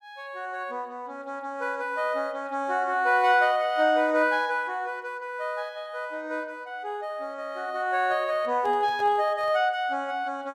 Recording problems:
handling noise; from 8 to 9.5 s; peak -12 dB vs average level

